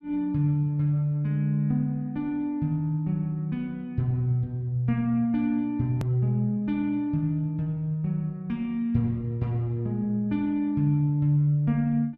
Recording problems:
edit click; at 6 s

